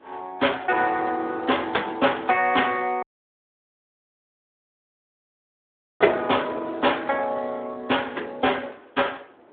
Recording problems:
telephone audio; 280 Hz to 3.5 kHz, Speex
wind on the microphone; below 910 Hz, SNR 17 dB
audio cutting out; at 3 s for 3 s

